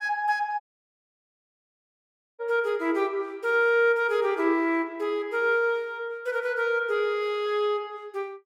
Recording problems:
dropout; at 0.5 s for 2 s

